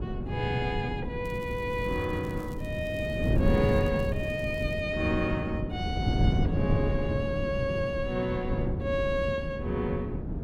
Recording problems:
wind noise; below 230 Hz, SNR 0 dB
crackle; from 1.5 to 5 s; loose cable, SNR 25 dB

